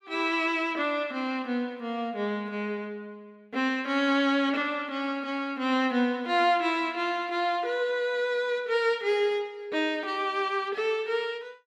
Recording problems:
none

